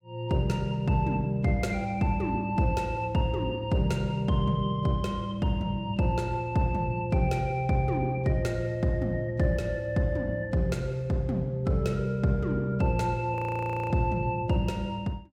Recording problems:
frozen audio; at 13 s for 0.5 s

